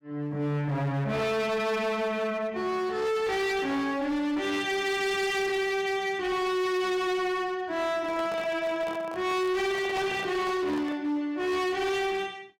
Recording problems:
distortion; hard clipping, signal-to-distortion ratio 8 dB
handling noise; from 8 to 11 s; peak -7 dB vs average level

